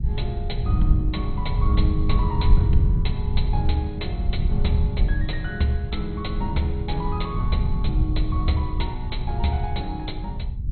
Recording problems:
codec artefacts; MP2, log-spectral distance 2 dB, nothing above 4.2 kHz
rumble; below 88 Hz, SNR -3 dB

